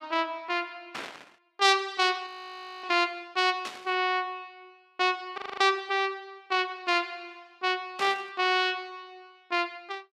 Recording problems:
burst of static; at 1 s, at 3.5 s and at 8 s; peak -4 dB vs average level
audio freezing; at 2.5 s for 0.5 s and at 5.5 s

